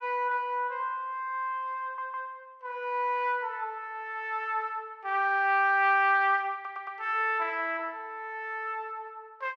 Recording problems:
audio stuttering; at 2 s and at 6.5 s

